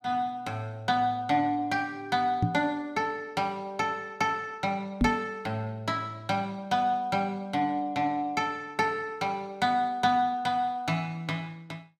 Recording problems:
knock on the microphone; at 2.5 s and at 5 s; peak +7 dB vs average level

